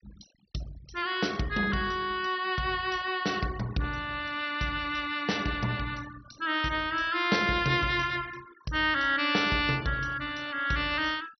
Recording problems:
treble cut off; nothing above 5.9 kHz
noise reduction artefacts; signal-to-artefact ratio 21 dB

